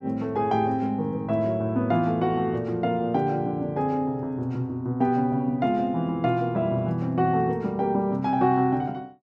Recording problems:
none

